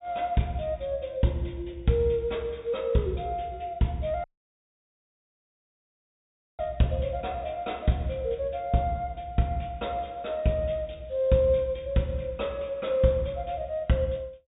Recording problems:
low-pass filter; nothing above 4 kHz
audio cutting out; at 4 s for 2.5 s

